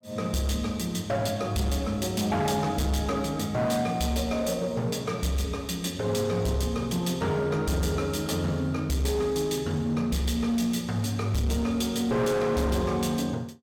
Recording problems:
distortion; hard clipping, signal-to-distortion ratio 11 dB

